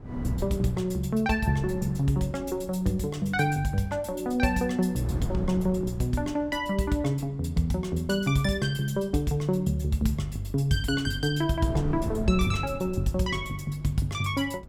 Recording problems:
wind noise; below 220 Hz, SNR 13 dB

